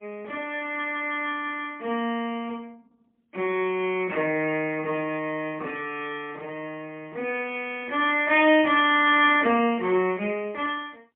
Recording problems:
telephone audio; 220 Hz to 3.4 kHz, AMR-NB, then MP3

